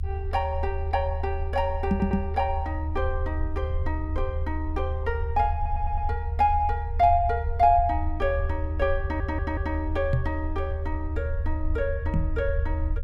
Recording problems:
rumble; below 78 Hz, SNR 3 dB
stutter; at 2 s, at 5.5 s and at 9 s
knock on the microphone; at 2 s, at 10 s and at 12 s; peak +7 dB vs average level

